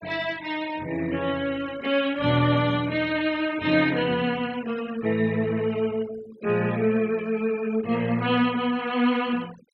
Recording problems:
denoising artefacts; signal-to-artefact ratio 19 dB

